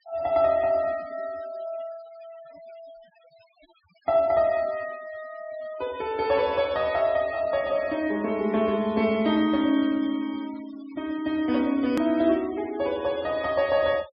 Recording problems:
treble cut off; nothing above 5.5 kHz
denoising artefacts; signal-to-artefact ratio 23 dB
click at an edit; at 12 s

